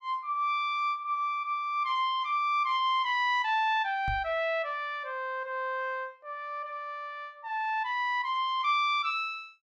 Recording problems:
microphone bump; at 4 s; peak -4 dB vs average level

